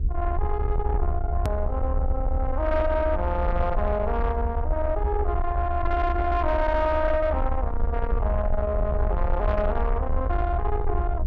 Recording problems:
distortion; soft clipping, signal-to-distortion ratio 11 dB
electrical hum; 60 Hz, harmonics up to 480 Hz, SNR 23 dB
low-frequency rumble; below 70 Hz, SNR 2 dB
edit click; at 1.5 s

